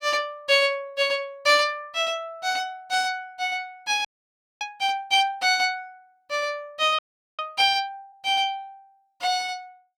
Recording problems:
audio freezing; at 4 s for 0.5 s and at 7 s

